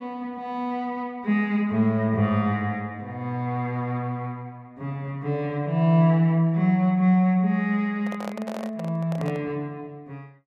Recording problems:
handling noise; from 8 to 9.5 s; peak -6 dB vs average level

